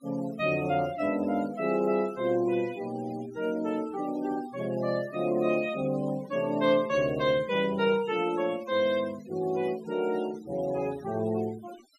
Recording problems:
denoising artefacts; signal-to-artefact ratio 19 dB

